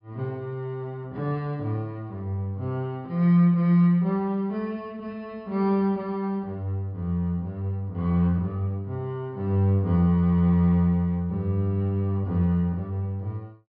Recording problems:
treble missing; nothing above 5.2 kHz

